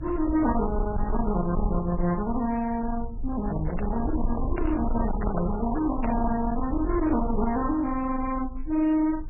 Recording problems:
lossy compression; AAC, then MP3, log-spectral distance 2 dB, nothing above 2.5 kHz
distortion; hard clipping, uneven, signal-to-distortion ratio 9 dB
low-frequency rumble; below 66 Hz, strongest tone 22 Hz, SNR 7 dB
handling noise; from 3.5 to 6.5 s; peak -3 dB vs average level

